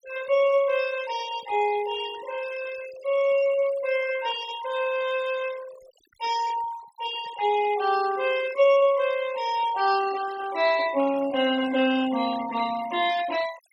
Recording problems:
denoising artefacts; signal-to-artefact ratio 17 dB

